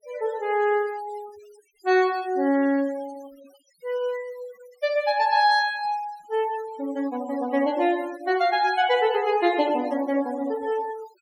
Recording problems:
denoising artefacts; signal-to-artefact ratio 21 dB

